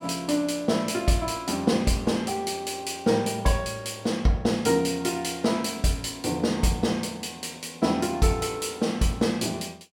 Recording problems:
none

